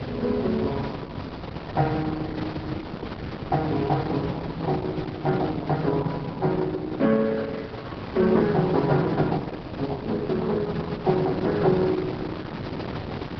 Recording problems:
treble missing; nothing above 5.5 kHz
lossy compression; Opus, log-spectral distance 4 dB
wind on the microphone; below 720 Hz, SNR 9 dB

